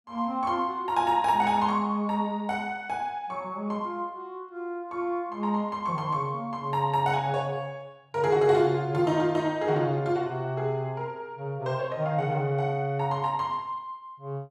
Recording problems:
none

